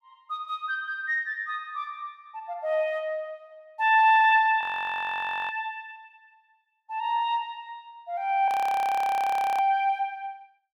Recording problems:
frozen audio; at 4.5 s for 1 s and at 8.5 s for 1 s

